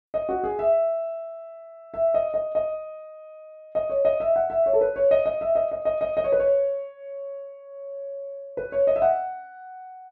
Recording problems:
none

